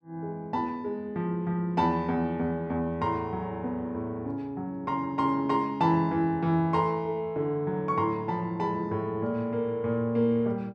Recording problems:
none

